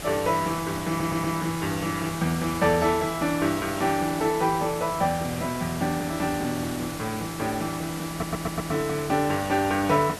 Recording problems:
background hiss; slope -3 dB per octave, SNR 9 dB
audio stuttering; at 1 s and at 8 s

